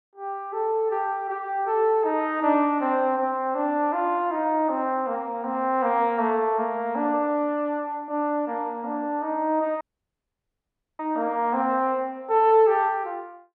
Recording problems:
dropout; at 10 s for 1 s

